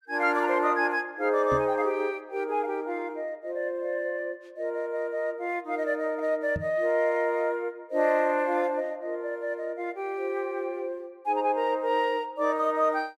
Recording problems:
microphone thump; at 1.5 s and at 6.5 s; peak -2 dB vs average level

